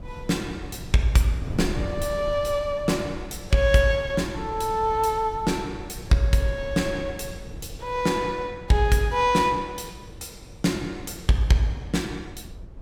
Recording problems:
wind noise; below 130 Hz, SNR 15 dB

